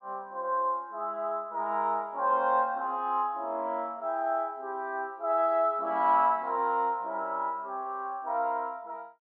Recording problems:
none

